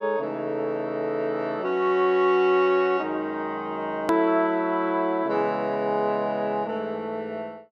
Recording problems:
click at an edit; at 4 s

